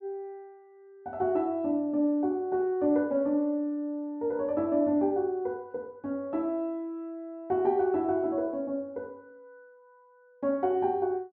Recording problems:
treble cut off; nothing above 8 kHz

